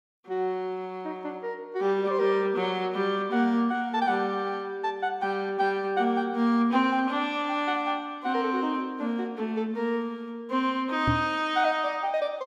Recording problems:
knock on the microphone; at 11 s; peak +4 dB vs average level

